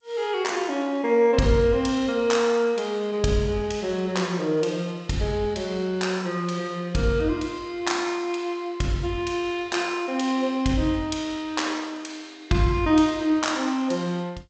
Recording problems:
lossy compression; G.722, log-spectral distance 2 dB, nothing above 7.8 kHz

